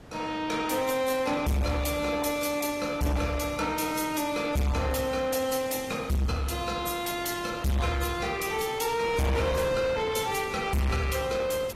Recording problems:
lossy codec; AAC, log-spectral distance 4 dB, nothing above 14.3 kHz
distorted audio; soft clipping, signal-to-distortion ratio 6 dB
wind on the microphone; below 1.1 kHz, SNR 15 dB

